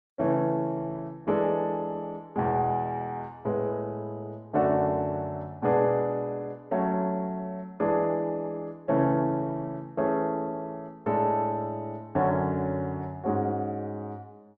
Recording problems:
codec artefacts; Opus, log-spectral distance 2 dB

